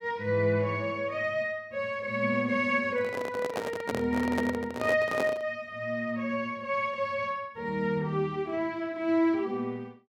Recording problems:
handling noise; from 3 to 5.5 s; peak +2 dB vs average level

